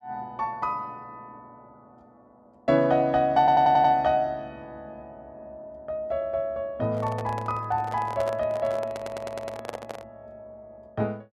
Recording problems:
audio stuttering; at 3.5 s and at 9 s
microphone handling noise; from 7 to 10 s; peak -5 dB vs average level

